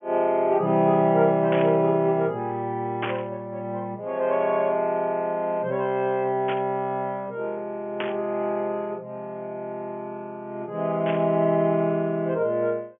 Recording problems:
treble cut off; nothing above 3.3 kHz
static burst; 5 times, first at 1.5 s; peak -1 dB vs average level

